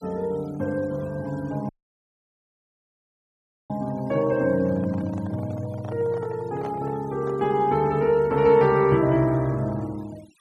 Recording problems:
noise reduction artefacts; signal-to-artefact ratio 26 dB
audio cutting out; at 1.5 s for 2 s
handling noise; from 4.5 to 7.5 s; peak -10 dB vs average level

